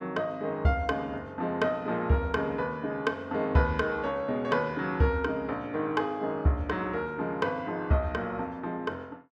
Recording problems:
none

